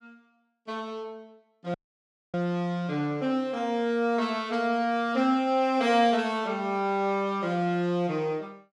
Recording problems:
audio cutting out; at 1.5 s for 0.5 s

